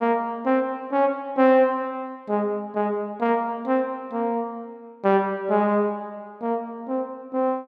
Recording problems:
none

